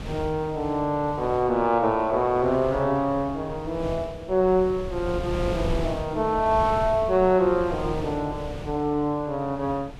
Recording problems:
wind on the microphone; below 280 Hz, SNR 12 dB

